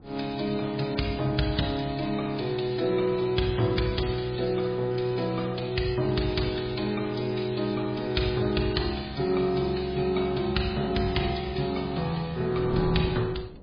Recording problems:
lossy codec; MP3, log-spectral distance 5 dB, nothing above 4.5 kHz
wind noise; below 350 Hz, SNR 17 dB

